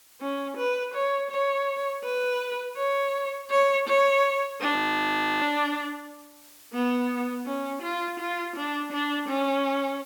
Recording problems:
background hiss; slope +1 dB per octave, SNR 23 dB
frozen audio; at 5 s for 0.5 s

